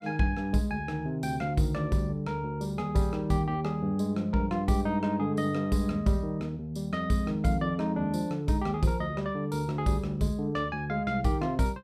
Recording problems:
none

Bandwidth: 15 kHz